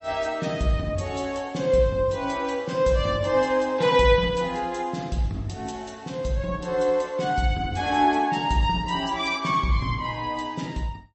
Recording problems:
lossy compression; MP3, log-spectral distance 2 dB, nothing above 8 kHz

